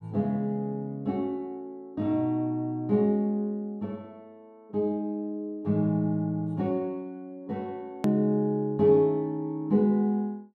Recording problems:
hard cut with a click; at 8 s

